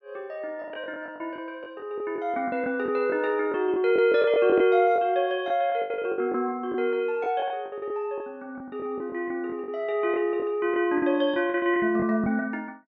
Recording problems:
packet loss; 12% of the sound replaced, filled with the last packet

